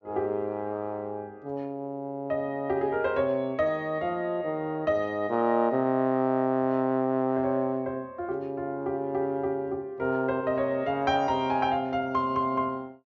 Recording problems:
low-pass filter; nothing above 7.1 kHz

